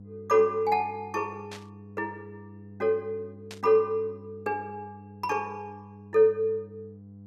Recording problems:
hum; 50 Hz, harmonics up to 500 Hz, SNR 19 dB
static burst; at 1.5 s and at 3.5 s; peak -10 dB vs average level

